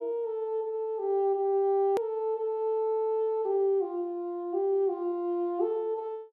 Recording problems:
hard cut with a click; at 2 s

